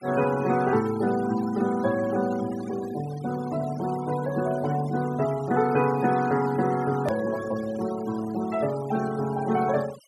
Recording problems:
noise reduction artefacts; signal-to-artefact ratio 17 dB
click at an edit; at 7 s

